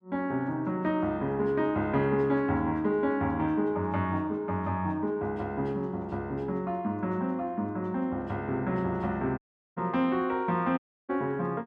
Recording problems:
audio cutting out; at 9.5 s and at 11 s

